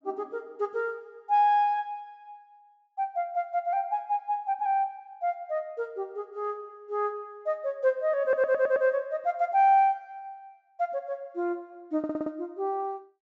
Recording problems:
treble cut off; nothing above 8 kHz
audio stuttering; at 8 s and at 12 s

